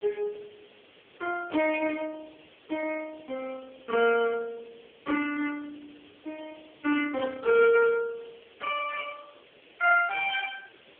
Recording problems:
telephone audio; 240 Hz to 3.2 kHz, AMR-NB
background hiss; SNR 27 dB

